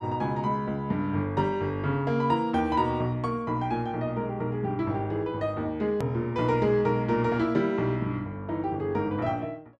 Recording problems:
click at an edit; at 6 s

